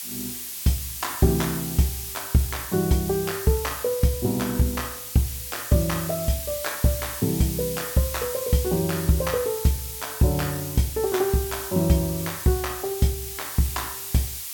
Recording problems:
background hiss; slope +4 dB per octave, SNR 7 dB

